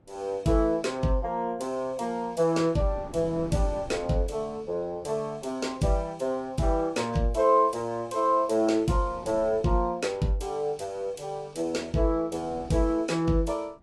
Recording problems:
codec artefacts; AAC, log-spectral distance 2 dB, nothing above 11.3 kHz
wind on the microphone; below 370 Hz, SNR 20 dB

